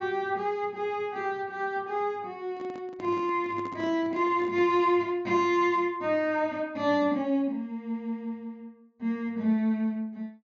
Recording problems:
treble missing; nothing above 7.3 kHz
handling noise; from 2.5 to 5 s; peak -8 dB vs average level

